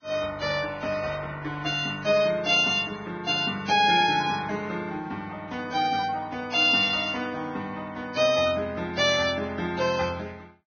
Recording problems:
lossy compression; Vorbis, log-spectral distance 4 dB, nothing above 5.5 kHz

